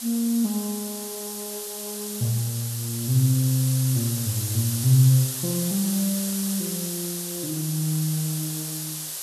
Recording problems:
hiss; SNR 5 dB

